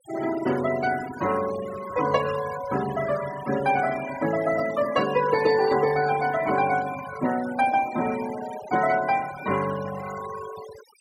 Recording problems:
denoising artefacts; signal-to-artefact ratio 13 dB

